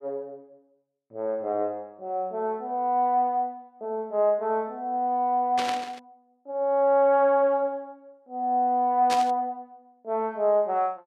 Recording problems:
burst of static; at 5.5 s and at 9 s; peak -2 dB vs average level

